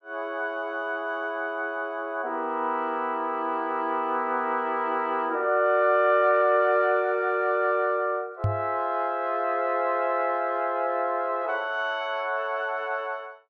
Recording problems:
microphone bump; at 8.5 s; peak +3 dB vs average level

